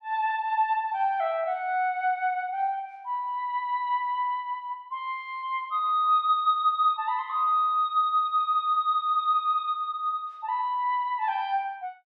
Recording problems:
none

